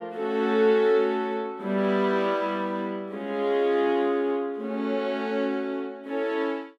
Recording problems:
none

